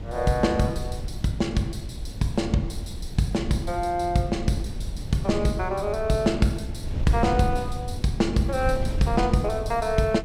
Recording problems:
wind on the microphone; below 100 Hz, SNR 8 dB

